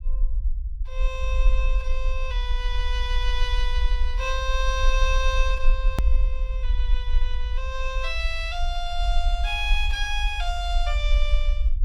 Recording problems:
rumble; below 46 Hz, SNR -3 dB
hard cut with a click; at 6 s

